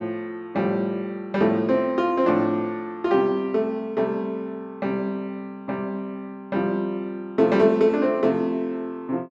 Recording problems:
none

